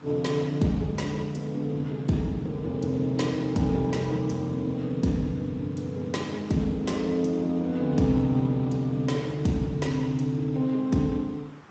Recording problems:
codec artefacts; Speex, log-spectral distance 3 dB, nothing above 7.6 kHz
background hiss; SNR 24 dB

